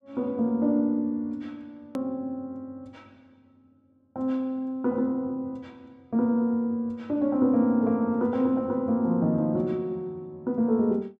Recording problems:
edit click; at 2 s

